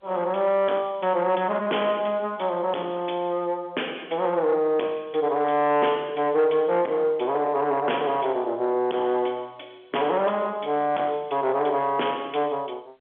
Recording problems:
telephone audio; 260 Hz to 3.4 kHz, G.711
distortion; soft clipping, signal-to-distortion ratio 11 dB

